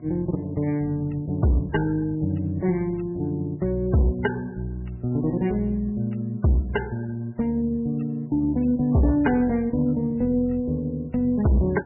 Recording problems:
codec artefacts; MP3, log-spectral distance 2 dB, nothing above 2.9 kHz
distortion; hard clipping, signal-to-distortion ratio 12 dB
hum; 60 Hz, harmonics up to 1.1 kHz, SNR 24 dB

